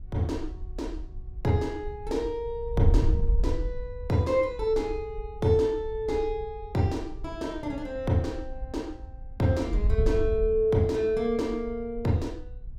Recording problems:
wind noise; below 66 Hz, SNR 7 dB

